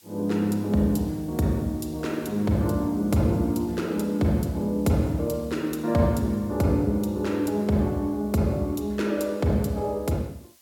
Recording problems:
hiss; slope +2 dB per octave, SNR 27 dB

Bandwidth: 17 kHz